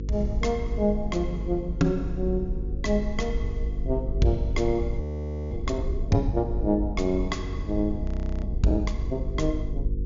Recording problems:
treble missing; nothing above 7.1 kHz
hum; 50 Hz, harmonics up to 500 Hz, SNR 6 dB
low-frequency rumble; below 68 Hz, SNR 6 dB
frozen audio; at 5 s for 0.5 s and at 8 s

